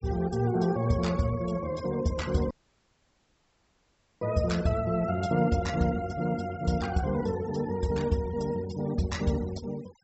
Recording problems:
treble cut off; nothing above 7.8 kHz
denoising artefacts; signal-to-artefact ratio 18 dB
dropout; at 2.5 s for 1.5 s

